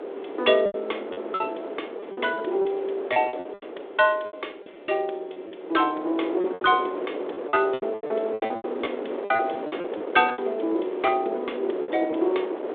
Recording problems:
phone line; 280 Hz to 3.6 kHz, G.726
wind noise; below 590 Hz, SNR 8 dB
lost packets; 13% of the sound replaced, filled with repeated pitch periods

